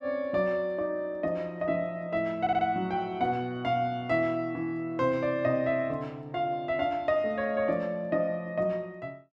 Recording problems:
stutter; at 2.5 s

